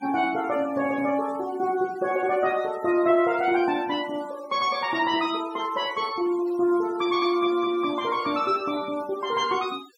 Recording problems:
denoising artefacts; signal-to-artefact ratio 21 dB

